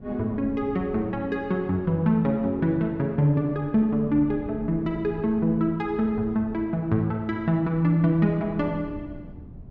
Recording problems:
wind on the microphone; below 200 Hz, SNR 18 dB

